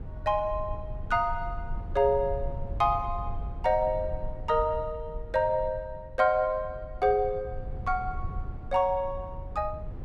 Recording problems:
rumble; below 88 Hz, SNR 11 dB

